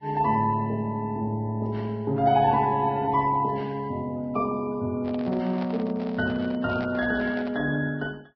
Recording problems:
lossy compression; Vorbis, log-spectral distance 2 dB
handling noise; from 5 to 7.5 s; peak -8 dB vs average level

